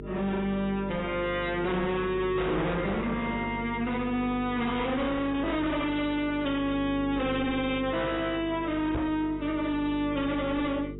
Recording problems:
lossy compression; AAC, log-spectral distance 3 dB, nothing above 3.8 kHz
distortion; soft clipping, signal-to-distortion ratio 5 dB
hum; 50 Hz, harmonics up to 450 Hz, SNR 11 dB
microphone bump; at 9 s; peak +2 dB vs average level

